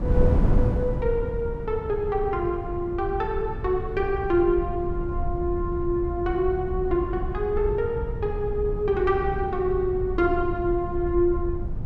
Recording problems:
rumble; below 88 Hz, SNR 9 dB
wind noise; below 180 Hz, SNR 7 dB

